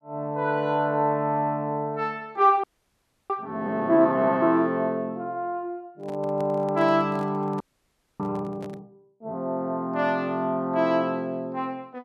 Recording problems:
frozen audio; at 2.5 s for 0.5 s and at 7.5 s for 0.5 s
microphone handling noise; from 6 to 9 s; peak -12 dB vs average level

